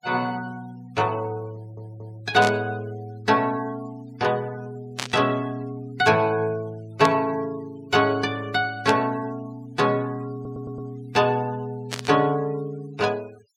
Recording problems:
denoising artefacts; signal-to-artefact ratio 25 dB
stutter; at 1.5 s and at 10 s
burst of static; 5 times, first at 2.5 s; peak 0 dB vs average level

